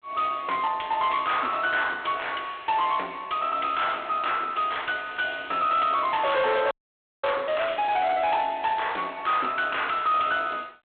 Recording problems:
phone line; 280 Hz to 3.5 kHz, G.726
distorted audio; hard clipping, uneven, signal-to-distortion ratio 11 dB
frozen audio; at 6.5 s for 0.5 s

